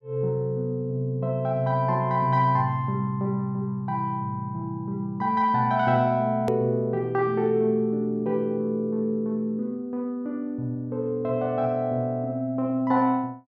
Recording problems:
edit click; at 6.5 s

